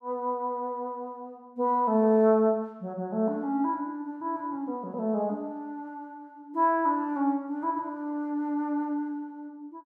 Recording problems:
none

